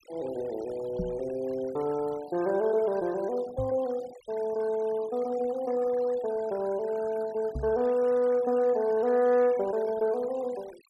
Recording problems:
noise reduction artefacts; signal-to-artefact ratio 21 dB
knock on the microphone; at 1 s, at 3.5 s and at 7.5 s; peak -1 dB vs average level

